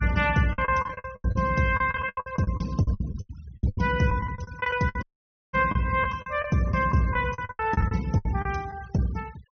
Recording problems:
low-pass filter; nothing above 6.1 kHz
denoising artefacts; signal-to-artefact ratio 21 dB
lost packets; 18% of the sound replaced, filled with the last packet
dropout; at 5 s for 0.5 s

